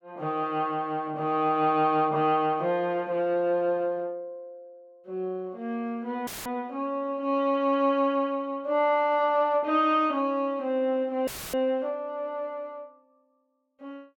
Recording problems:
audio cutting out; at 6.5 s and at 11 s; filled with static

